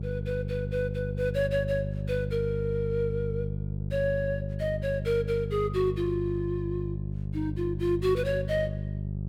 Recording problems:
hum; 50 Hz, harmonics up to 400 Hz, SNR 3 dB

